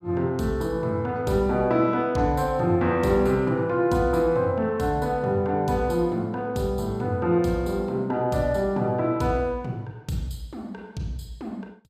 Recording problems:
none

